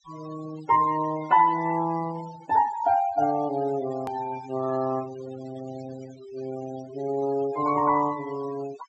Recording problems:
treble missing; nothing above 8 kHz
denoising artefacts; signal-to-artefact ratio 19 dB
click at an edit; at 4 s

